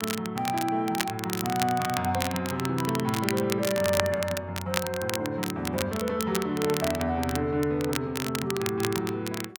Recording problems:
crackling; vinyl, SNR 6 dB

